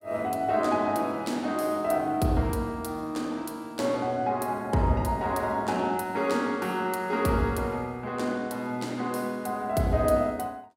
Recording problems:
none

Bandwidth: 16 kHz